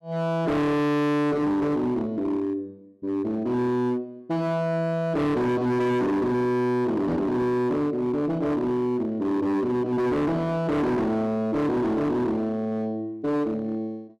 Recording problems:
distorted audio; hard clipping, signal-to-distortion ratio 6 dB

